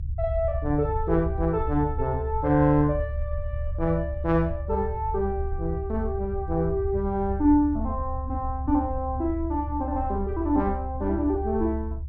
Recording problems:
rumble; below 72 Hz, strongest tone 70 Hz, SNR 6 dB

